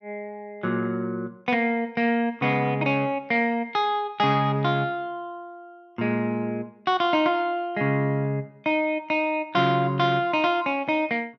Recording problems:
none

